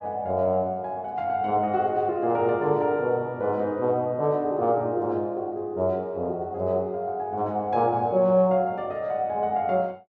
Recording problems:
none

